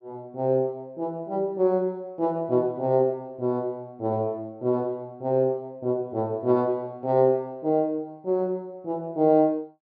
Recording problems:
none

